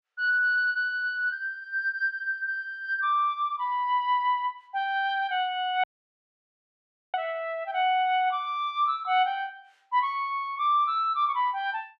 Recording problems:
dropout; at 6 s for 1.5 s

